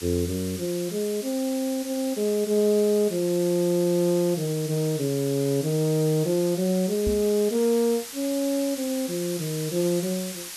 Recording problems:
hiss; slope +2 dB per octave, SNR 11 dB
knock on the microphone; at 7 s; peak -1 dB vs average level

